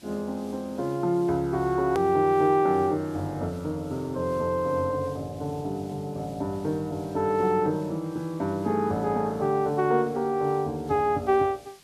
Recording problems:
hiss; SNR 26 dB
hard cut with a click; at 2 s

